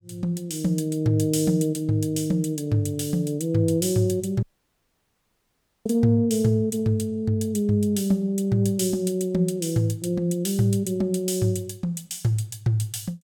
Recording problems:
dropout; at 4.5 s for 1.5 s

